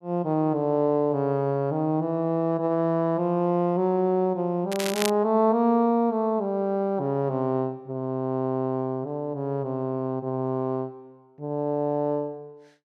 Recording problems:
crackling; at 4.5 s; loose cable, SNR 7 dB

